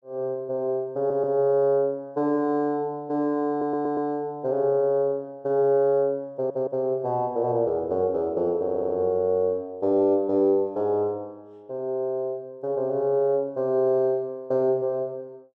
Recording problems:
audio stuttering; 4 times, first at 1 s

